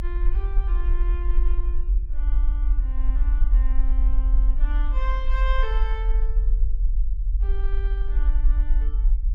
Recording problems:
low-frequency rumble; below 44 Hz, SNR -14 dB

